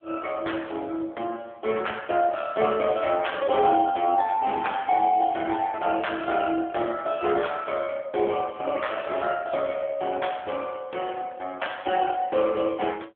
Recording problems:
phone line; 280 Hz to 3.5 kHz, AMR-NB

